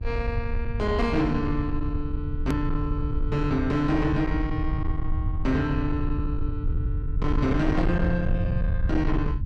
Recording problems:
distortion; soft clipping, signal-to-distortion ratio 11 dB
electrical hum; 50 Hz, harmonics up to 700 Hz, SNR 24 dB
low-frequency rumble; below 90 Hz, SNR 2 dB
click at an edit; at 2.5 s

